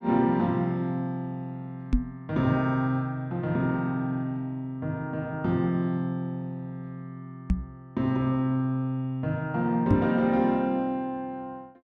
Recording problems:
microphone bump; at 2 s, at 7.5 s and at 10 s; peak +8 dB vs average level

